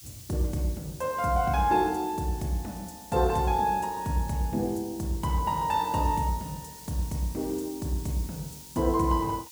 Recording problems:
background hiss; slope +7 dB per octave, SNR 17 dB

